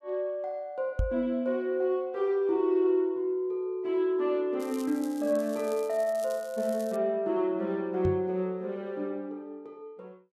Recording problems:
microphone bump; at 1 s and at 8 s; peak +3 dB vs average level
crackling; from 4.5 to 7 s; loose cable, SNR 20 dB

